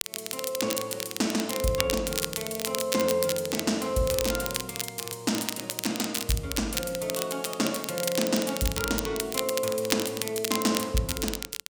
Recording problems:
crackling; vinyl, SNR 3 dB

